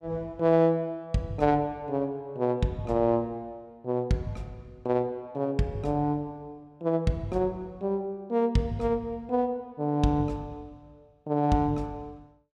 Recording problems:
none

